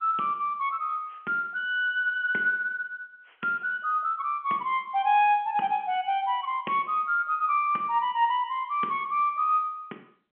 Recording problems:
phone line; 220 Hz to 3.3 kHz, G.711

